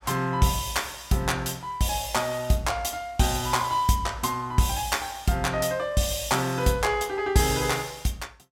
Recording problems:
none

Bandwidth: 16.5 kHz